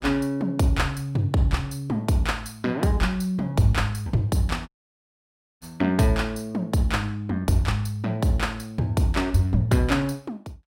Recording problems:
audio cutting out; at 4.5 s for 1 s

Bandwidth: 16 kHz